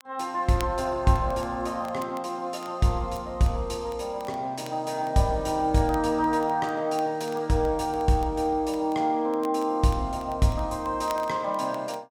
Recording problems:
crackling; vinyl, SNR 24 dB

